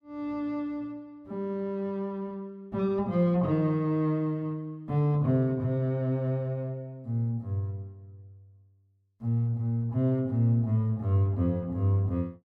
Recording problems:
none

